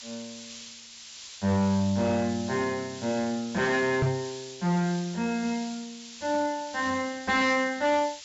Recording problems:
treble missing; nothing above 8 kHz
distortion; hard clipping, signal-to-distortion ratio 12 dB
background hiss; slope +5 dB per octave, SNR 15 dB
knock on the microphone; at 4 s; peak +5 dB vs average level

